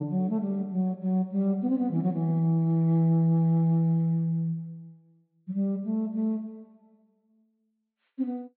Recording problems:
treble cut off; nothing above 4.3 kHz

